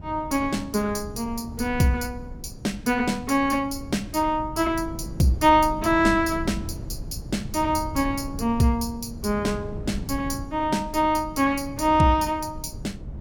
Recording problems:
wind on the microphone; below 160 Hz, SNR 13 dB

